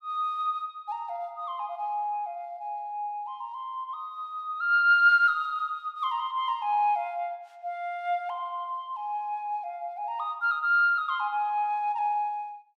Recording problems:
none

